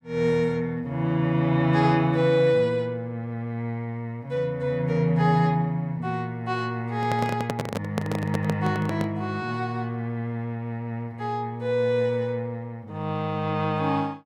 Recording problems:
microphone handling noise; from 7 to 9 s; peak +1 dB vs average level

